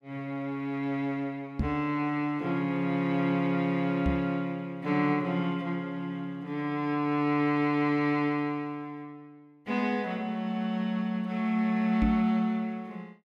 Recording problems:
microphone thump; at 1.5 s, at 4 s and at 12 s; peak +3 dB vs average level

